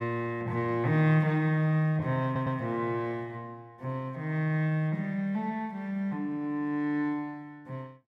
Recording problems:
stutter; at 2.5 s

